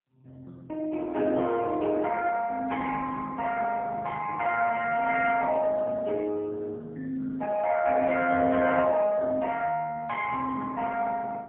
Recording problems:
phone line; 340 Hz to 2.5 kHz, AMR-NB, then MP3

